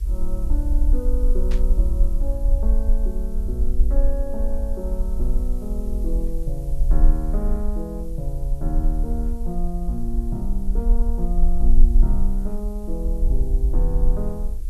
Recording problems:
hum; 60 Hz, harmonics up to 480 Hz, SNR 26 dB
hiss; slope +1 dB per octave, SNR 22 dB
rumble; below 42 Hz, strongest tone 20 Hz, SNR -7 dB
static burst; at 1.5 s; peak -4 dB vs average level

